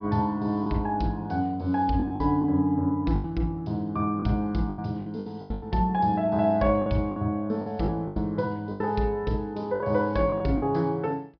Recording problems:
low-pass filter; nothing above 5.5 kHz
packet loss; 9% of the sound replaced, filled with the last packet

